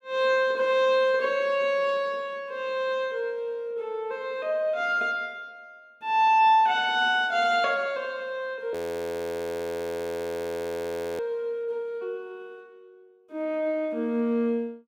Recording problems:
audio freezing; at 8.5 s for 2.5 s

